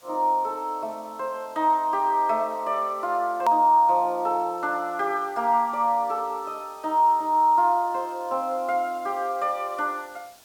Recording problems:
background hiss; SNR 27 dB
click at an edit; at 3.5 s

